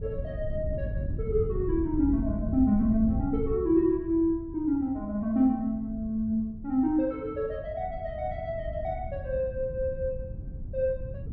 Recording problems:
wind noise; below 120 Hz, SNR 9 dB

